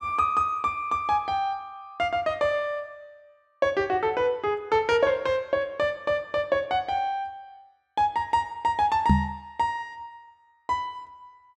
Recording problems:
microphone bump; at 9 s; peak +9 dB vs average level

